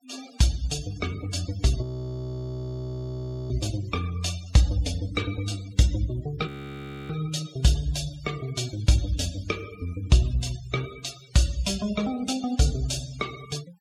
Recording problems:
noise reduction artefacts; signal-to-artefact ratio 15 dB
frozen audio; at 2 s for 1.5 s and at 6.5 s for 0.5 s

